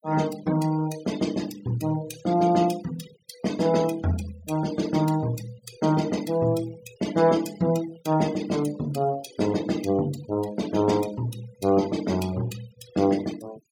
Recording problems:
noise reduction artefacts; signal-to-artefact ratio 17 dB

